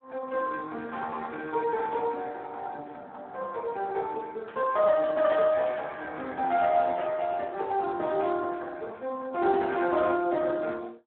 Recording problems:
telephone audio; 260 Hz to 3 kHz, Speex
static burst; 4 times, first at 2 s; peak -14 dB vs average level

